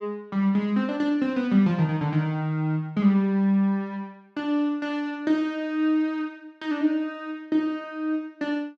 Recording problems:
none

